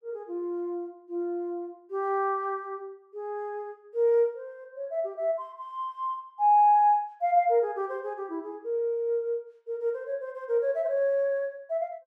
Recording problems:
none

